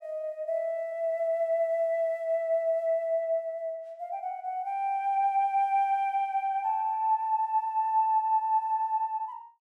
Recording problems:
none

